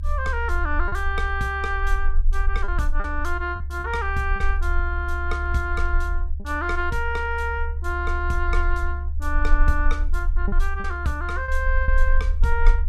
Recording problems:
rumble; below 68 Hz, SNR 0 dB
packet loss; 3% of the sound replaced, filled with repeated pitch periods

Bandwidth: 15 kHz